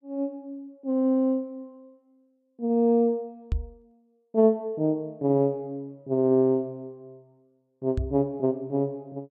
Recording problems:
knock on the microphone; at 3.5 s and at 8 s; peak +1 dB vs average level

